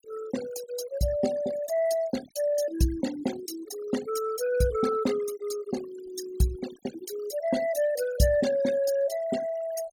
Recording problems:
denoising artefacts; signal-to-artefact ratio 12 dB

